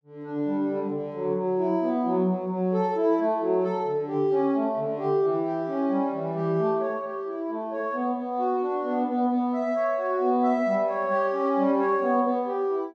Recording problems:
none

